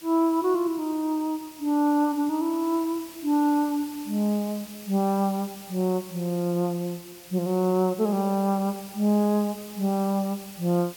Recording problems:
background hiss; slope 0 dB per octave, SNR 17 dB

